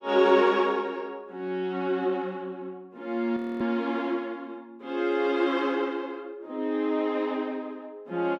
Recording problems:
audio freezing; at 3.5 s

